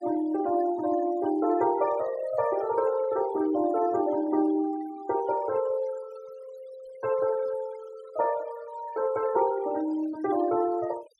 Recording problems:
noise reduction artefacts; signal-to-artefact ratio 19 dB

